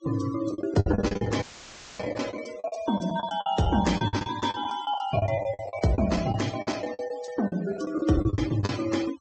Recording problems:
treble cut off; nothing above 8 kHz
denoising artefacts; signal-to-artefact ratio 15 dB
lost packets; 19% of the sound replaced, filled with the last packet
audio cutting out; at 1.5 s for 0.5 s; filled with static

